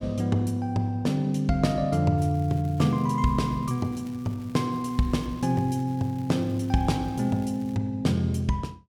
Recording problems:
crackle; from 2 to 8 s; loose cable, SNR 28 dB

